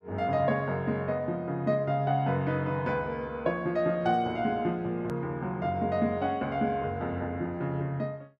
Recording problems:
click at an edit; at 5 s

